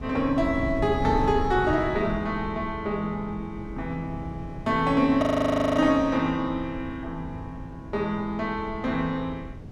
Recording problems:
wind on the microphone; below 190 Hz, SNR 11 dB
frozen audio; at 5 s for 0.5 s

